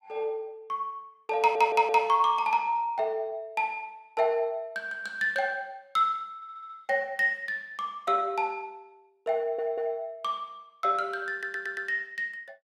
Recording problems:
audio stuttering; 4 times, first at 1.5 s

